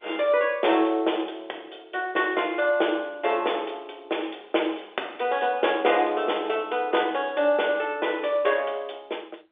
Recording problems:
phone line; 280 Hz to 3.6 kHz, G.711

